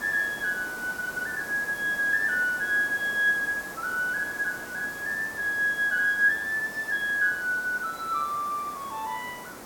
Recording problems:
background hiss; SNR 14 dB

